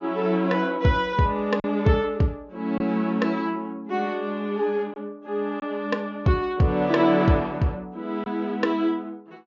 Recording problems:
treble cut off; nothing above 6.9 kHz
lost packets; 1.3% of the sound replaced, filled with silence

